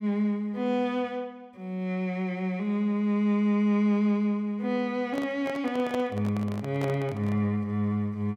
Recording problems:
microphone handling noise; from 5 to 7.5 s; peak -5 dB vs average level

